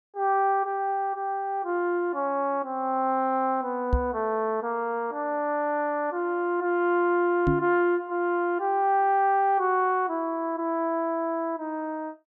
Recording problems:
microphone thump; at 4 s and at 7.5 s; peak +5 dB vs average level

